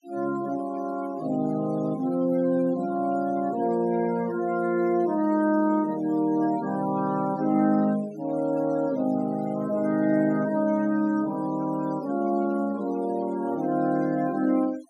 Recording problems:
denoising artefacts; signal-to-artefact ratio 21 dB

